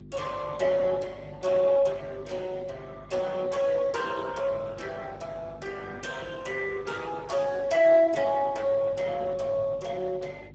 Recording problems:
codec artefacts; Speex, log-spectral distance 4 dB
hum; 50 Hz, harmonics up to 450 Hz, SNR 21 dB

